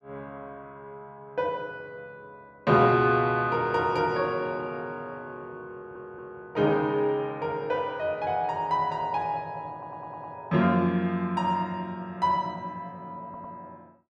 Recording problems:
audio stuttering; at 5.5 s, at 9.5 s and at 13 s

